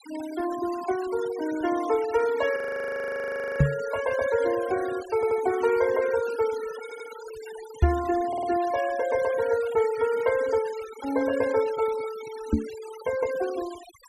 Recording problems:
noise reduction artefacts; signal-to-artefact ratio 15 dB
frozen audio; at 2.5 s for 1 s
microphone bump; at 3.5 s, at 8 s and at 13 s; peak +9 dB vs average level
audio stuttering; at 5 s, at 7 s and at 8.5 s

